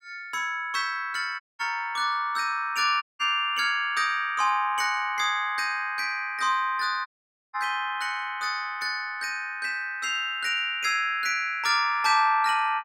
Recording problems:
dropout; at 1.5 s, at 3 s and at 7 s

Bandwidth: 16 kHz